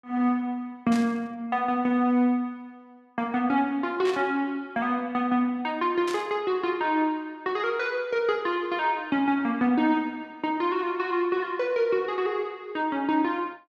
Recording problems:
static burst; at 1 s, at 4 s and at 6 s; peak -6 dB vs average level

